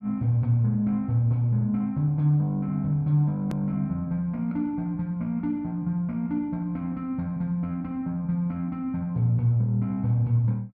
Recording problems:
hard cut with a click; at 3.5 s

